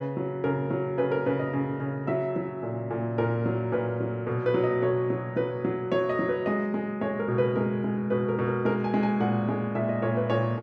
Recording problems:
none

